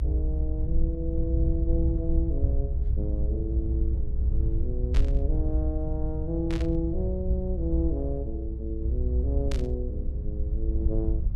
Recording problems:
rumble; below 64 Hz, SNR -5 dB
burst of static; at 5 s, at 6.5 s and at 9.5 s; peak -1 dB vs average level

